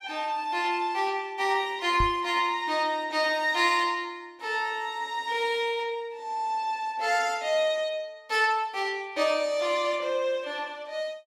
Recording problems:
knock on the microphone; at 2 s; peak 0 dB vs average level

